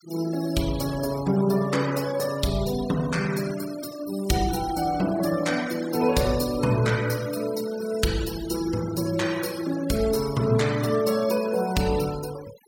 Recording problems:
noise reduction artefacts; signal-to-artefact ratio 14 dB

